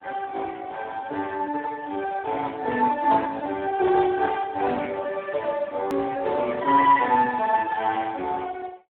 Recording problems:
telephone audio; 260 Hz to 2.3 kHz, Speex
edit click; at 6 s

